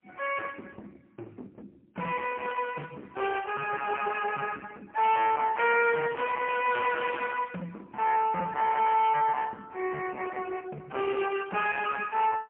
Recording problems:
phone line; 260 Hz to 2.9 kHz, AMR-NB, then MP3
distortion; hard clipping, signal-to-distortion ratio 8 dB

